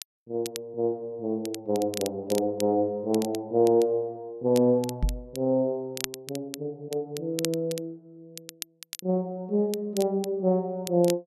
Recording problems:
crackle; vinyl, SNR 13 dB
knock on the microphone; at 5 s; peak +3 dB vs average level

